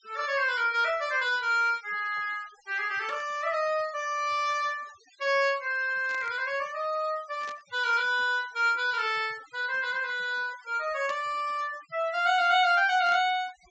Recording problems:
low-pass filter; nothing above 8 kHz
noise reduction artefacts; signal-to-artefact ratio 22 dB
static burst; 5 times, first at 3 s; peak -12 dB vs average level

